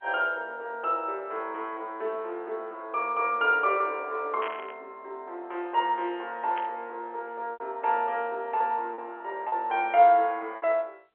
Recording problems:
phone line; 370 Hz to 3.6 kHz, G.711
packet loss; 3% of the sound replaced, filled with repeated pitch periods
static burst; at 4.5 s and at 6.5 s; peak -5 dB vs average level

